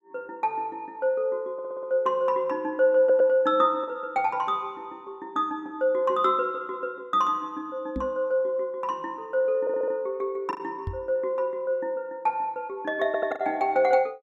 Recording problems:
lost packets; 1.5% of the sound replaced, filled with the last packet
audio stuttering; 4 times, first at 1.5 s
knock on the microphone; at 8 s and at 11 s; peak -2 dB vs average level

